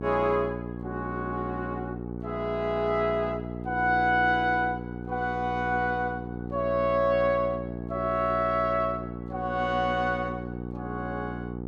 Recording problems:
hum; 60 Hz, harmonics up to 900 Hz, SNR 8 dB

